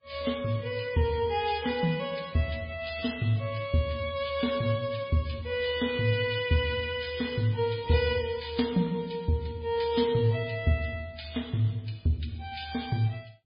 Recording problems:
lossy codec; MP3, then MP3, log-spectral distance 5 dB, nothing above 5 kHz

